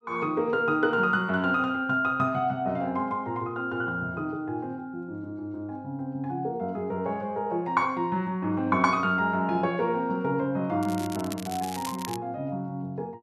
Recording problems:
crackle; from 11 to 12 s; loose cable, SNR 13 dB

